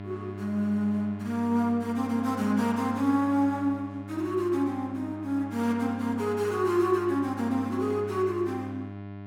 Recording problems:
hum; 50 Hz, harmonics up to 2.1 kHz, SNR 12 dB

